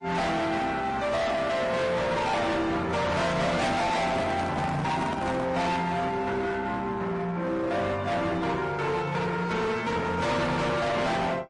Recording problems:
codec artefacts; AAC, then MP3, log-spectral distance 3 dB, nothing above 10.1 kHz
distorted audio; hard clipping, signal-to-distortion ratio 6 dB
microphone handling noise; from 3.5 to 5.5 s; peak 0 dB vs average level

